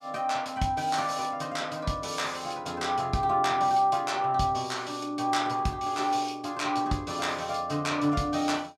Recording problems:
none

